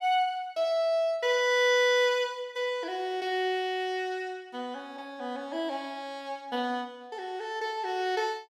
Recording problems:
none

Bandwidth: 14.5 kHz